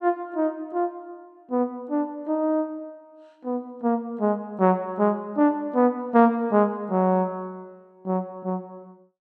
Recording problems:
none

